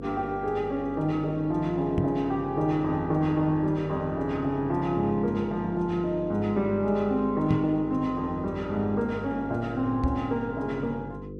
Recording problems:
hum; 50 Hz, harmonics up to 500 Hz, SNR 12 dB
microphone thump; at 2 s, at 7.5 s and at 10 s; peak +4 dB vs average level

